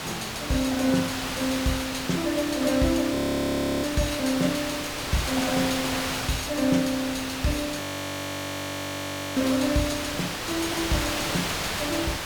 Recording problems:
hiss; slope -2 dB per octave, SNR 2 dB
audio freezing; at 3 s for 0.5 s and at 8 s for 1.5 s

